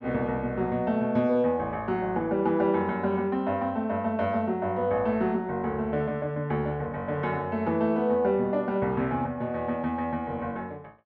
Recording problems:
none

